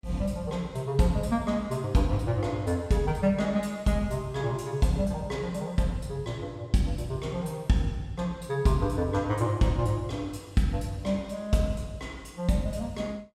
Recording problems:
none

